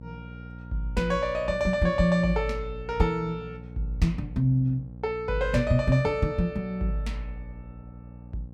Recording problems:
electrical hum; 60 Hz, harmonics up to 600 Hz, SNR 16 dB

